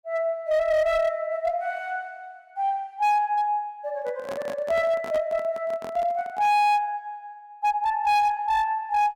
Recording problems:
distortion; hard clipping, uneven, signal-to-distortion ratio 11 dB
handling noise; from 4 to 6.5 s; peak -8 dB vs average level

